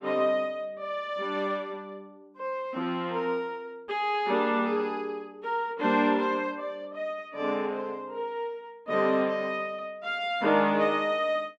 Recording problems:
none

